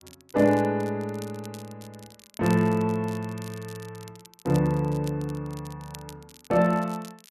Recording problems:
crackle; vinyl, SNR 22 dB

